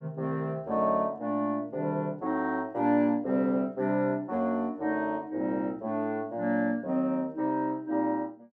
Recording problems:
none

